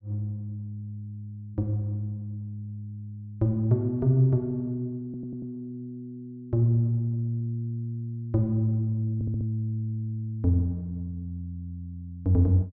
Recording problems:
stutter; at 5 s and at 9 s

